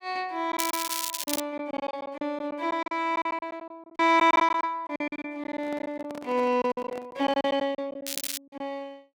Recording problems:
lost packets; 13% of the sound replaced, filled with silence
crackle; at 0.5 s and at 8 s; loose cable, SNR 3 dB
handling noise; from 5.5 to 7.5 s; peak -9 dB vs average level

